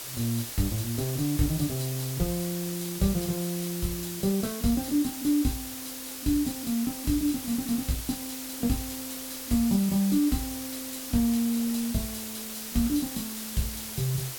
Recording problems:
background hiss; slope 0 dB per octave, SNR 7 dB
wind on the microphone; below 1.2 kHz, SNR 28 dB

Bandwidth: 17 kHz